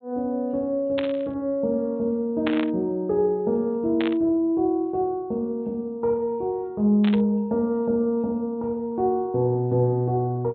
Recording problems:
treble missing; nothing above 4 kHz
burst of static; 4 times, first at 1 s; peak -1 dB vs average level

